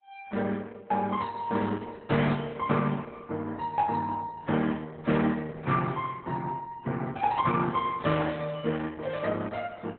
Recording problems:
codec artefacts; AAC, then Opus, log-spectral distance 3 dB, nothing above 3.6 kHz

